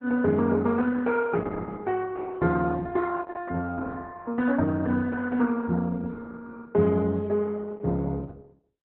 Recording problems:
lossy compression; Opus, log-spectral distance 3 dB, nothing above 4 kHz

